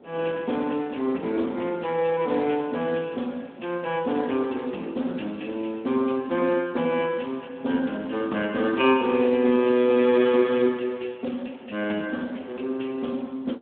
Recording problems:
phone line; 170 Hz to 3.5 kHz, Speex
wind noise; below 600 Hz, SNR 23 dB

